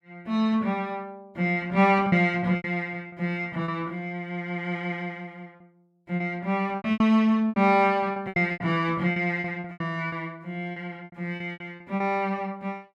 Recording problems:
lost packets; 10% of the sound replaced, filled with repeated pitch periods

